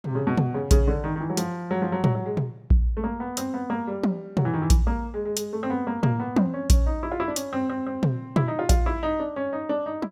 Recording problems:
none

